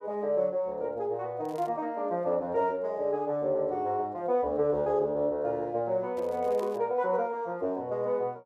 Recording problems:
crackling; at 1.5 s and at 6 s; loose cable, SNR 27 dB

